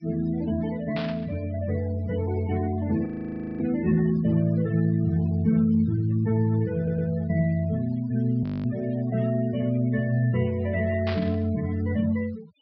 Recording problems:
treble missing; nothing above 5.5 kHz
noise reduction artefacts; signal-to-artefact ratio 18 dB
burst of static; at 1 s and at 11 s; peak -6 dB vs average level
frozen audio; at 3 s for 0.5 s and at 8.5 s
audio stuttering; at 7 s

